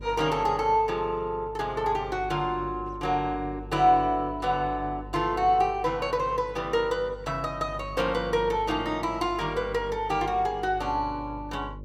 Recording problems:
hum; 50 Hz, harmonics up to 600 Hz, SNR 16 dB

